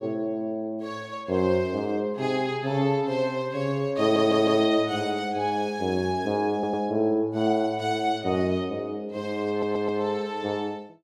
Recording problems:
audio stuttering; at 4 s, at 6.5 s and at 9.5 s

